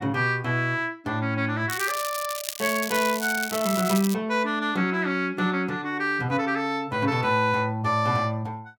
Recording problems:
crackle; from 1.5 to 4 s; loose cable, SNR 7 dB

